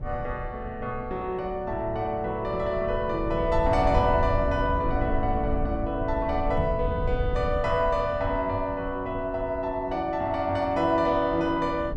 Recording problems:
rumble; below 98 Hz, SNR 8 dB
knock on the microphone; at 6.5 s; peak -3 dB vs average level

